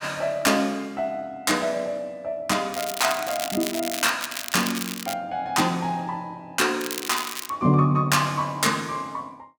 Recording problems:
crackle; from 2.5 to 5 s and at 7 s; loose cable, SNR 7 dB

